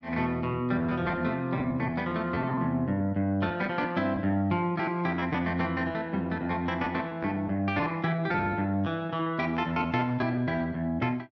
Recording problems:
packet loss; 10% of the sound replaced, filled with repeated pitch periods

